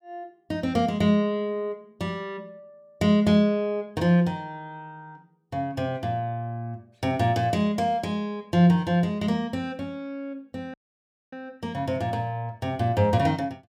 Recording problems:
audio cutting out; at 11 s for 0.5 s

